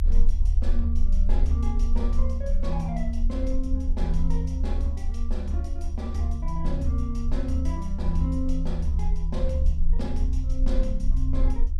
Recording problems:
low-frequency rumble; below 66 Hz, strongest tone 18 Hz, SNR -4 dB

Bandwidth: 14.5 kHz